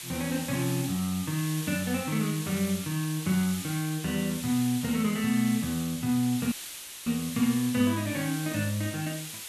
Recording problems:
background hiss; slope +2 dB per octave, SNR 9 dB
dropout; at 6.5 s for 0.5 s

